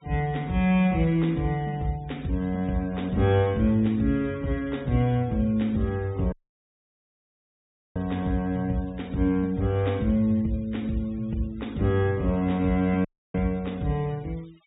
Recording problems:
low-pass filter; nothing above 4 kHz
noise reduction artefacts; signal-to-artefact ratio 27 dB
dropout; at 6.5 s for 1.5 s and at 13 s

